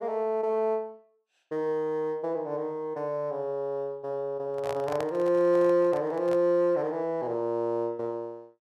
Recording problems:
handling noise; from 4.5 to 6.5 s; peak -3 dB vs average level

